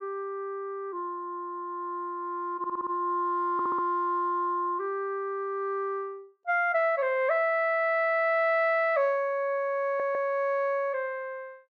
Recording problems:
stutter; at 2.5 s, at 3.5 s and at 10 s

